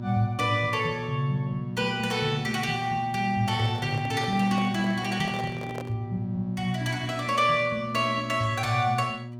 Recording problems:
hum; 60 Hz, harmonics up to 960 Hz, SNR 10 dB
microphone handling noise; from 3.5 to 6 s; peak -6 dB vs average level

